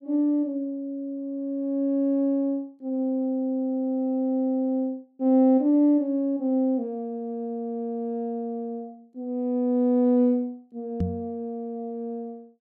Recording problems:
knock on the microphone; at 11 s; peak +2 dB vs average level

